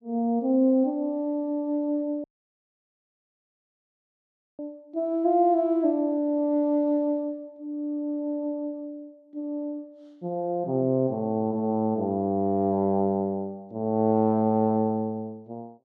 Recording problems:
dropout; at 2 s for 2.5 s

